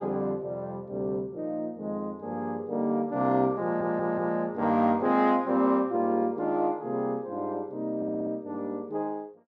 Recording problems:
audio stuttering; at 3.5 s and at 8 s

